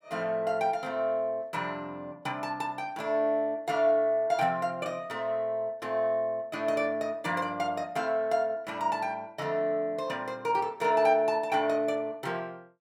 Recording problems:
none

